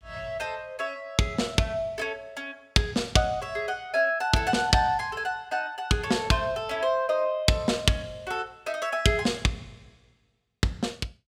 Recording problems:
none

